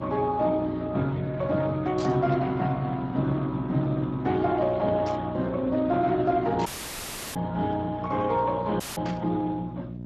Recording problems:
lossy compression; Speex, log-spectral distance 3 dB
hum; 60 Hz, harmonics up to 660 Hz, SNR 10 dB
static burst; 4 times, first at 2 s; peak -8 dB vs average level
dropout; at 6.5 s for 0.5 s and at 9 s

